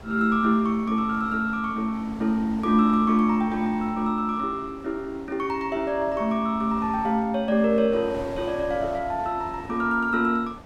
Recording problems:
wind on the microphone; below 820 Hz, SNR 19 dB

